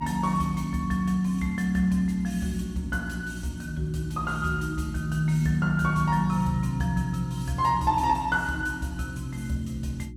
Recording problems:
hum; 60 Hz, harmonics up to 360 Hz, SNR 14 dB

